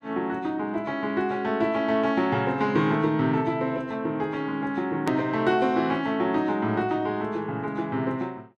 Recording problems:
edit click; at 5 s

